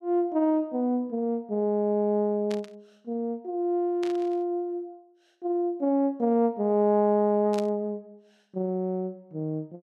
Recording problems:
burst of static; at 2.5 s, at 4 s and at 7.5 s; peak -9 dB vs average level

